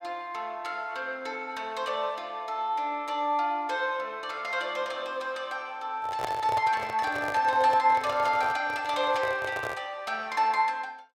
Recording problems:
handling noise; from 6 to 10 s; peak -1 dB vs average level

